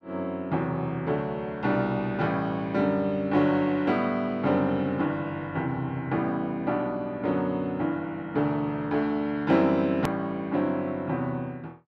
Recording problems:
edit click; at 10 s

